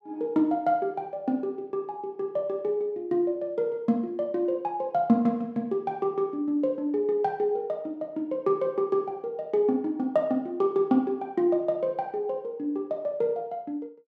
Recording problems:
none

